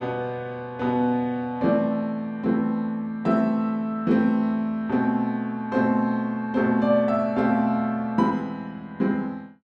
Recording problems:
none

